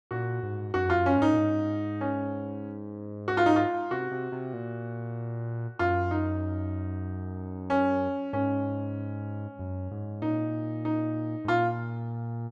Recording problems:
none

